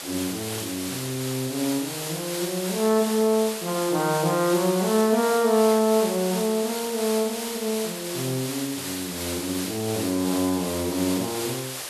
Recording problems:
background hiss; slope 0 dB per octave, SNR 6 dB

